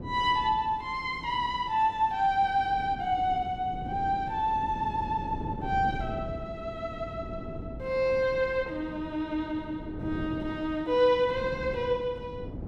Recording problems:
wind on the microphone; below 310 Hz, SNR 12 dB

